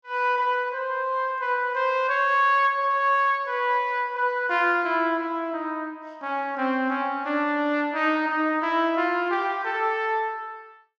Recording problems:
none

